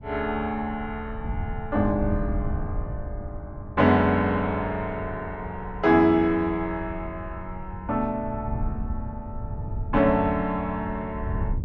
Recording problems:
wind on the microphone; below 110 Hz, SNR 10 dB

